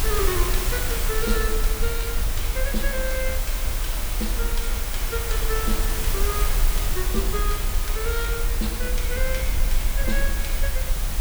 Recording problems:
hiss; slope -2 dB per octave, SNR -2 dB
rumble; below 46 Hz, SNR -2 dB
crackle; from 4 to 6.5 s; loose cable, SNR 26 dB

